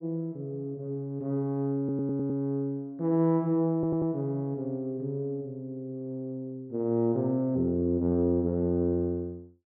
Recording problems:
audio stuttering; at 2 s and at 3.5 s

